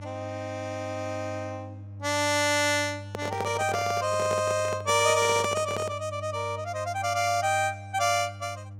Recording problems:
electrical hum; 50 Hz, harmonics up to 500 Hz, SNR 14 dB
handling noise; from 3 to 6 s; peak -1 dB vs average level

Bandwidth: 16 kHz